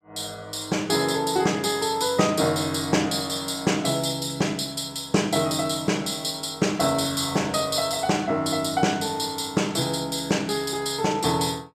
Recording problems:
none

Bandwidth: 15 kHz